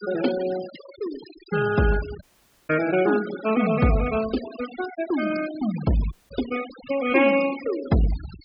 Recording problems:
low-pass filter; nothing above 5.5 kHz
denoising artefacts; signal-to-artefact ratio 14 dB
dropout; at 2 s and at 6 s

